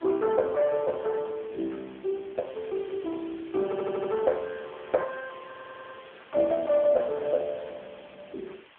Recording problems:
telephone audio; 280 Hz to 2.6 kHz, AMR-NB
background hiss; SNR 23 dB
stutter; at 3.5 s and at 5.5 s

